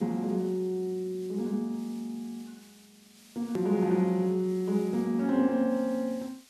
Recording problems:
hiss; slope +2 dB per octave, SNR 25 dB
hard cut with a click; at 3.5 s

